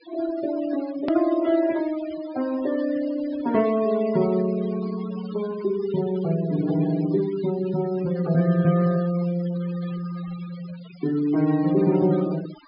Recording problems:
low-pass filter; nothing above 5.5 kHz
denoising artefacts; signal-to-artefact ratio 17 dB
click at an edit; at 1 s

